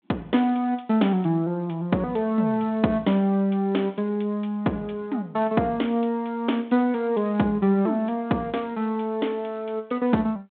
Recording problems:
telephone audio; 130 Hz to 3.7 kHz, G.726

